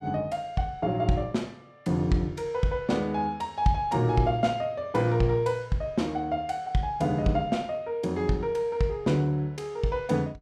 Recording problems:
none

